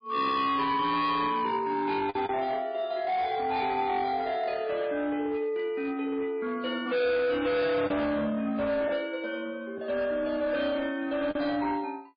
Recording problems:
lossy compression; MP3, log-spectral distance 2 dB, nothing above 4.4 kHz
distorted audio; hard clipping, signal-to-distortion ratio 8 dB
packet loss; 1.4% of the sound replaced, filled with the last packet

